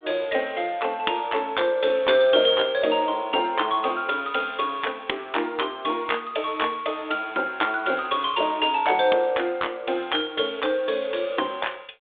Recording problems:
telephone audio; 280 Hz to 3.6 kHz, G.726

